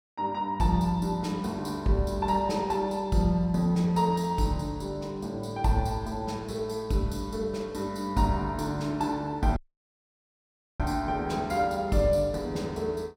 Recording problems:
dropout; at 9.5 s for 1 s

